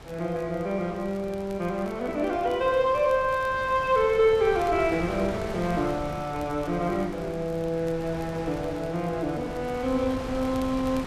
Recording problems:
wind noise; below 1 kHz, SNR 13 dB
crackle; vinyl, SNR 28 dB

